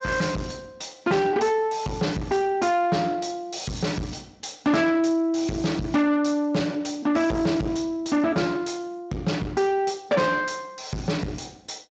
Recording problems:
lossy codec; Speex, log-spectral distance 4 dB, nothing above 7.3 kHz
distortion; soft clipping, signal-to-distortion ratio 7 dB

